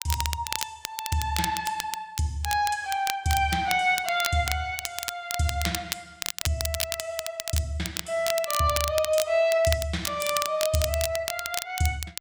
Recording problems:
crackle; vinyl, SNR 5 dB

